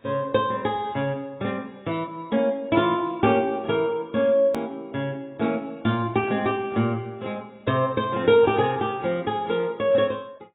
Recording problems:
codec artefacts; AAC, log-spectral distance 2 dB, nothing above 3.5 kHz
edit click; at 4.5 s

